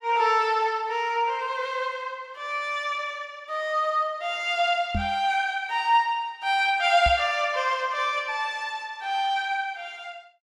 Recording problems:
microphone bump; at 5 s and at 7 s; peak 0 dB vs average level

